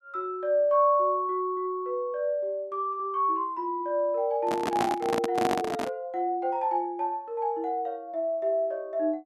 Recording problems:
microphone handling noise; from 4.5 to 6 s; peak +3 dB vs average level

